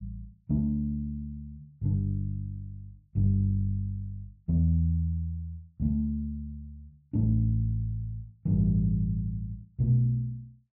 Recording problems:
treble missing; nothing above 4.6 kHz

